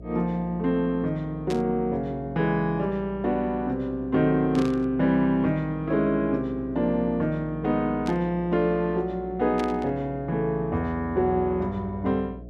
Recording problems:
hum; 60 Hz, harmonics up to 720 Hz, SNR 17 dB
burst of static; 4 times, first at 1.5 s; peak -8 dB vs average level

